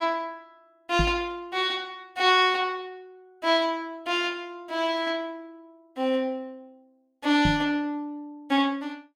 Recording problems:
microphone bump; at 1 s and at 7.5 s; peak +4 dB vs average level

